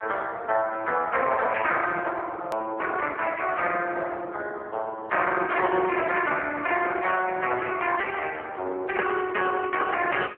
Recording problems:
phone line; 260 Hz to 3.3 kHz, AMR-NB
edit click; at 2.5 s

